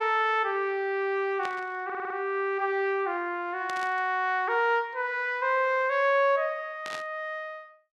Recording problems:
burst of static; at 1.5 s, at 3.5 s and at 7 s; peak -7 dB vs average level
stutter; at 2 s

